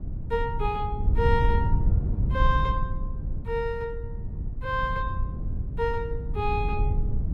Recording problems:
low-frequency rumble; below 94 Hz, SNR -1 dB

